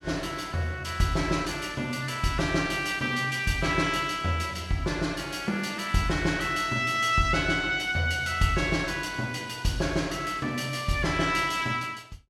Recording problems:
none

